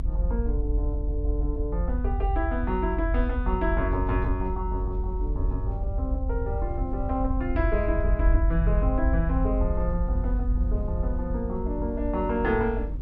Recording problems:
low-frequency rumble; below 66 Hz, strongest tone 46 Hz, SNR -1 dB
wind noise; below 280 Hz, SNR 17 dB

